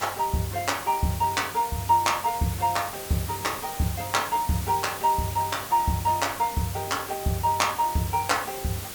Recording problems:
background hiss; slope -2 dB per octave, SNR 10 dB

